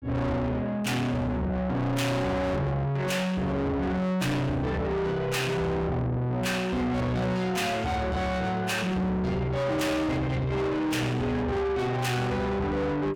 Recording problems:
distortion; soft clipping, signal-to-distortion ratio 7 dB

